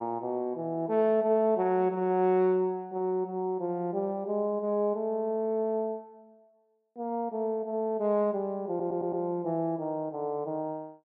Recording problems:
audio stuttering; at 8.5 s

